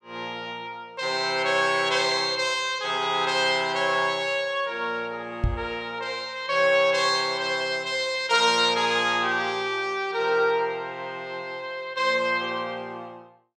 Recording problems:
microphone thump; at 5.5 s; peak +3 dB vs average level

